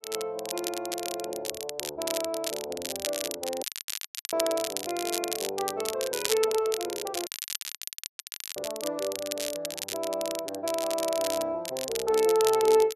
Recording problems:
crackling; vinyl, SNR 4 dB
audio cutting out; at 3.5 s for 0.5 s and at 7.5 s for 1.5 s

